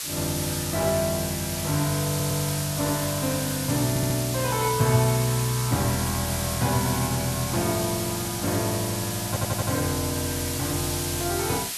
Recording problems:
hiss; slope +2 dB per octave, SNR 3 dB
stutter; at 2 s, at 4 s and at 9.5 s

